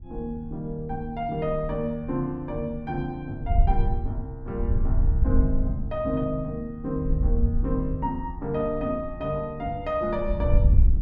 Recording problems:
wind noise; below 76 Hz, SNR -2 dB

